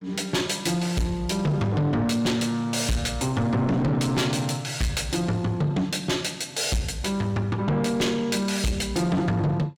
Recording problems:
distorted audio; soft clipping, signal-to-distortion ratio 7 dB

